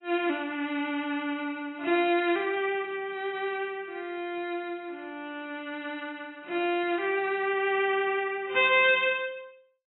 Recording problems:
lossy compression; AAC, log-spectral distance 3 dB, nothing above 3.8 kHz

